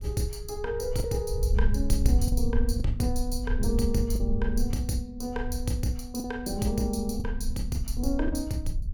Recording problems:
rumble; below 68 Hz, SNR 2 dB
packet loss; 3% of the sound replaced, filled with the last packet

